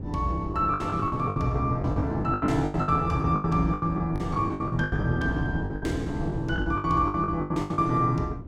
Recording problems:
wind on the microphone; below 260 Hz, SNR 10 dB
packet loss; 20% of the sound replaced, filled with the last packet

